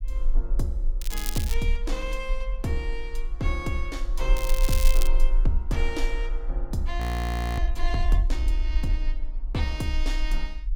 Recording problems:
low-frequency rumble; below 40 Hz, strongest tone 22 Hz, SNR -3 dB
crackling; at 1 s and at 4.5 s; loose cable, SNR 3 dB
frozen audio; at 7 s for 0.5 s

